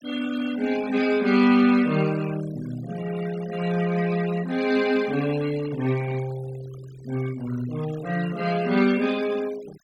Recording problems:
noise reduction artefacts; signal-to-artefact ratio 18 dB

